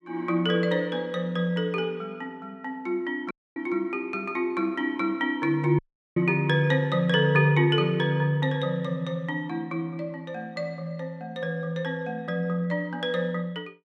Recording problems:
dropout; at 3.5 s and at 6 s

